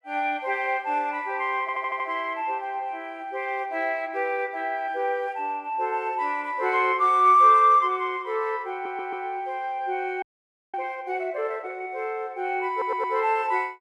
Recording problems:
stutter; at 1.5 s, at 8.5 s and at 13 s
frozen audio; at 10 s for 0.5 s

